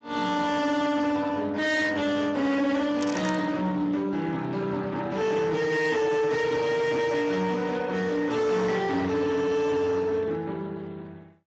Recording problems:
lossy compression; Speex, log-spectral distance 4 dB, nothing above 7.3 kHz
distortion; hard clipping, signal-to-distortion ratio 11 dB
burst of static; at 3 s; peak -7 dB vs average level

